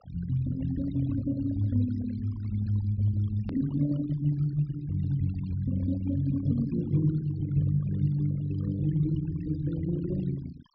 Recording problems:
treble cut off; nothing above 5.5 kHz
noise reduction artefacts; signal-to-artefact ratio 20 dB
click at an edit; at 3.5 s

